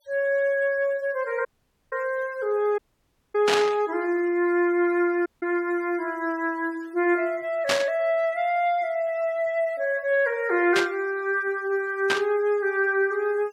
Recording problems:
denoising artefacts; signal-to-artefact ratio 27 dB
dropout; at 1.5 s, at 3 s for 0.5 s and at 5.5 s
static burst; 4 times, first at 3.5 s; peak +4 dB vs average level

